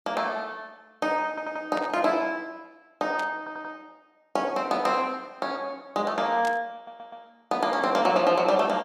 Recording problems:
stutter; at 1.5 s, at 3.5 s and at 7 s
static burst; at 2 s, at 3 s and at 6.5 s; peak -8 dB vs average level

